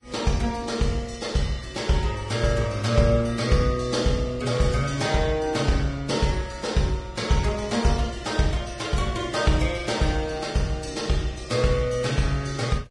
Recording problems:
lossy codec; Vorbis, log-spectral distance 4 dB, nothing above 10.4 kHz

